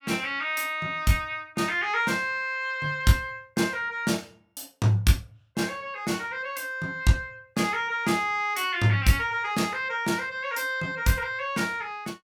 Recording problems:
none

